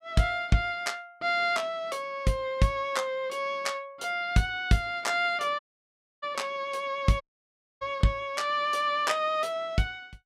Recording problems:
dropout; at 5.5 s for 0.5 s and at 7 s for 0.5 s

